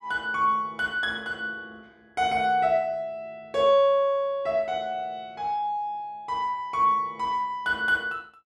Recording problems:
none

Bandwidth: 13 kHz